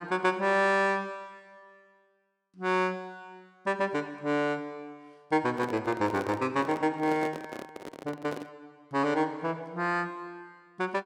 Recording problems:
handling noise; from 5.5 to 8.5 s; peak -4 dB vs average level

